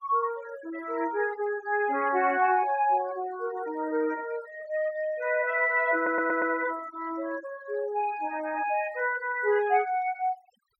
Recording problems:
noise reduction artefacts; signal-to-artefact ratio 21 dB
stutter; at 6 s

